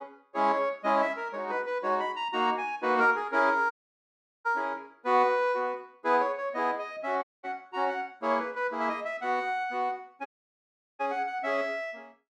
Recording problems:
audio cutting out; at 3.5 s for 0.5 s, at 7 s and at 10 s for 0.5 s

